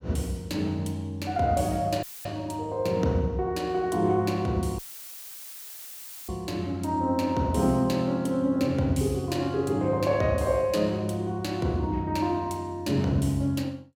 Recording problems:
dropout; at 2 s and at 5 s for 1.5 s; filled with static

